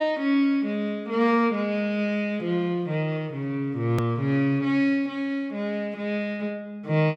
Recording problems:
click at an edit; at 4 s

